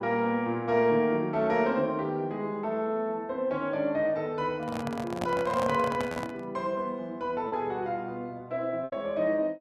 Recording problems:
lost packets; 1.7% of the sound replaced, filled with repeated pitch periods
handling noise; from 4.5 to 6.5 s; peak 0 dB vs average level

